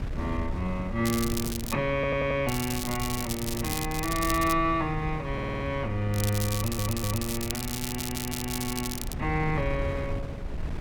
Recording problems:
wind on the microphone; below 150 Hz, SNR 7 dB
crackling; at 1 s, from 2.5 to 4.5 s and from 6 to 9 s; loose cable, SNR 5 dB
audio stuttering; 4 times, first at 2 s

